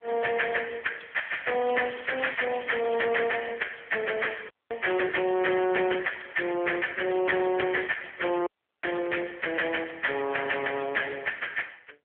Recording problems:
telephone audio; 280 Hz to 3.4 kHz, AMR-NB
distorted audio; hard clipping, uneven, signal-to-distortion ratio 10 dB
crackle; from 1.5 to 3 s; loose cable, SNR 17 dB
dropout; at 4.5 s and at 8.5 s

